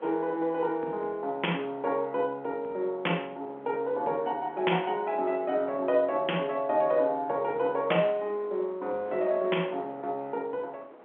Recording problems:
phone line; 240 Hz to 3.3 kHz, G.711
wind on the microphone; below 920 Hz, SNR 20 dB

